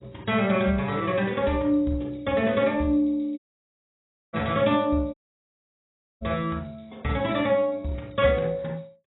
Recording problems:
codec artefacts; AAC, log-spectral distance 5 dB, nothing above 3.8 kHz
audio cutting out; at 3.5 s for 1 s and at 5 s for 1 s

